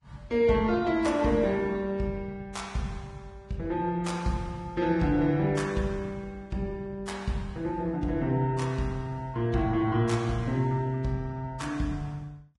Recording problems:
lossy compression; Vorbis, log-spectral distance 2 dB, nothing above 10.4 kHz

